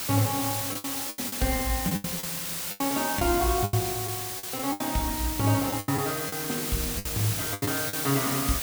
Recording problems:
background hiss; slope 0 dB per octave, SNR 1 dB
lost packets; 11% of the sound replaced, filled with the last packet
crackle; at 6 s; loose cable, SNR 28 dB

